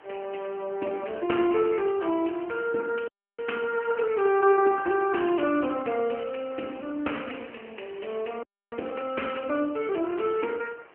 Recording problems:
phone line; 260 Hz to 3 kHz, AMR-NB
hiss; SNR 25 dB
audio freezing; at 3 s and at 8.5 s

